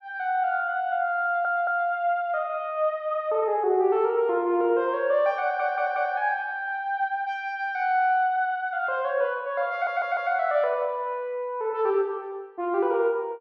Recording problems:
stutter; at 1 s, at 5.5 s and at 9.5 s

